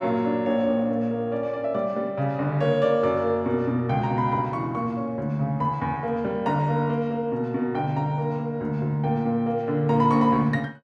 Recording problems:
none

